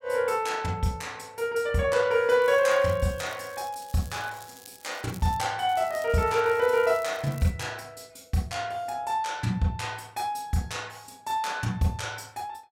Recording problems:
crackling; from 2.5 to 5.5 s and from 5.5 to 7.5 s; loose cable, SNR 22 dB

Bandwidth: 16.5 kHz